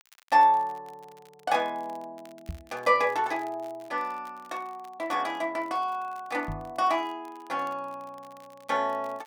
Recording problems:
crackling; vinyl, SNR 29 dB
microphone thump; at 2.5 s and at 6.5 s; peak -4 dB vs average level

